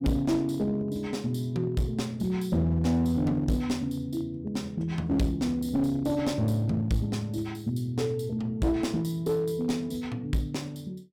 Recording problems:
distortion; hard clipping, uneven, signal-to-distortion ratio 11 dB

